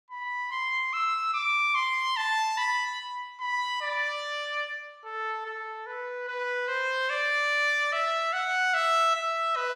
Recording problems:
none

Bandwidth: 16.5 kHz